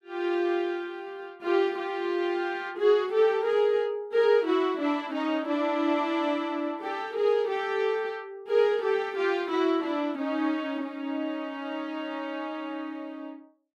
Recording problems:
none

